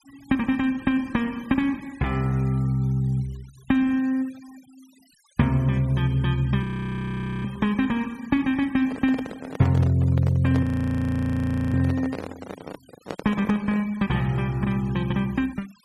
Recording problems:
noise reduction artefacts; signal-to-artefact ratio 25 dB
frozen audio; at 6.5 s for 1 s and at 11 s for 1 s
microphone handling noise; from 9 to 14 s; peak -4 dB vs average level

